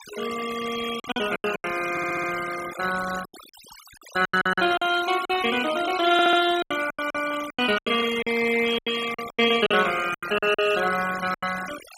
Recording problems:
denoising artefacts; signal-to-artefact ratio 12 dB
lost packets; 14% of the sound replaced, filled with silence
audio stuttering; at 2 s and at 6 s

